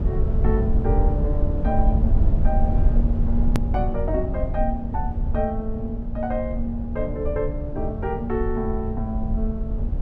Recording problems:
low-frequency rumble; below 78 Hz, SNR -3 dB
edit click; at 3.5 s

